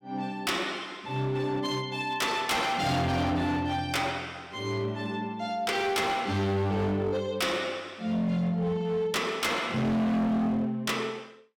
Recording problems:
distorted audio; hard clipping, signal-to-distortion ratio 8 dB

